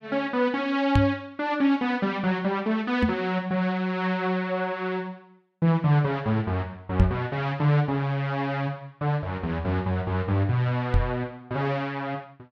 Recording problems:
knock on the microphone; 4 times, first at 1 s; peak +8 dB vs average level

